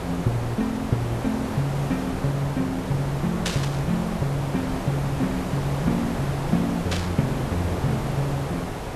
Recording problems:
hiss; slope -7 dB per octave, SNR 4 dB
burst of static; at 3.5 s and at 7 s; peak +5 dB vs average level

